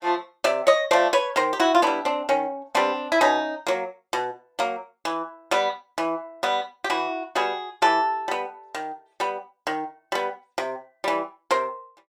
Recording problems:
none

